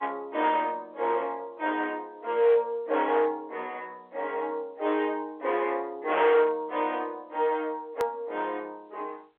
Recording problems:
telephone audio; 320 Hz to 3.7 kHz, G.711
distorted audio; hard clipping, signal-to-distortion ratio 13 dB
edit click; at 8 s

